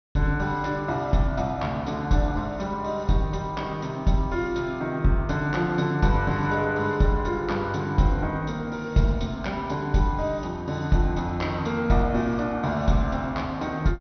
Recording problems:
treble missing; nothing above 6.1 kHz

